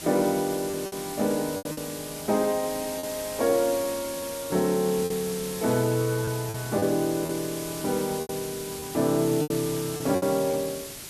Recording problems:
background hiss; SNR 9 dB
packet loss; 7% of the sound replaced, filled with repeated pitch periods

